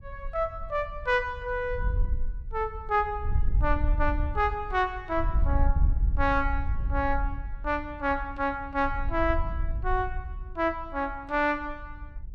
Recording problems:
wind noise; below 64 Hz, SNR 3 dB

